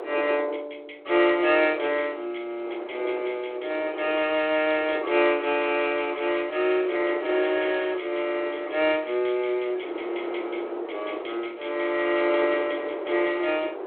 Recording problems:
phone line; 300 Hz to 3.4 kHz, G.726
wind on the microphone; below 670 Hz, SNR 12 dB

